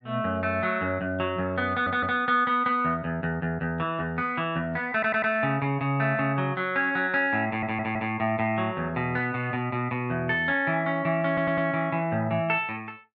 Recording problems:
stutter; 4 times, first at 1.5 s

